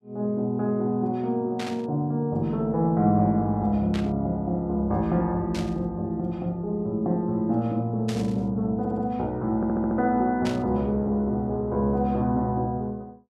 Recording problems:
static burst; 5 times, first at 1.5 s; peak -6 dB vs average level
audio stuttering; at 9 s and at 9.5 s

